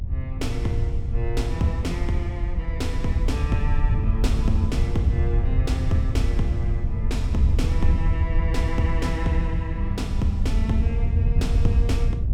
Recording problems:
low-frequency rumble; below 72 Hz, SNR 5 dB
wind on the microphone; below 86 Hz, SNR -3 dB

